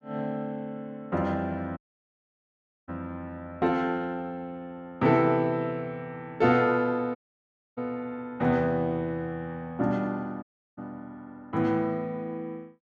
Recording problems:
audio cutting out; at 2 s for 1 s, at 7 s for 0.5 s and at 10 s

